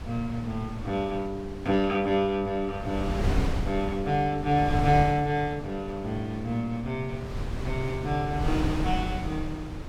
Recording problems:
wind on the microphone; below 200 Hz, SNR 6 dB

